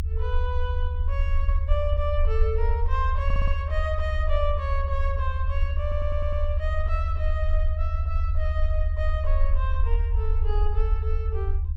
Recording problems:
low-frequency rumble; below 76 Hz, strongest tone 24 Hz, SNR -6 dB
stutter; at 3.5 s and at 6 s

